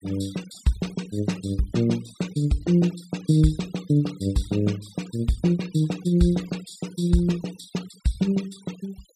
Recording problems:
denoising artefacts; signal-to-artefact ratio 20 dB

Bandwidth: 15 kHz